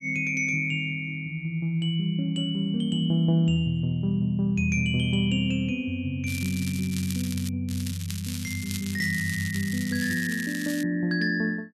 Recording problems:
crackling; from 6.5 to 7.5 s and from 7.5 to 11 s; loose cable, SNR 11 dB

